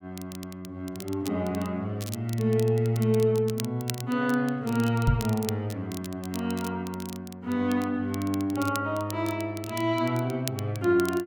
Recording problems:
crackle; vinyl, SNR 15 dB
microphone thump; at 5 s; peak +6 dB vs average level

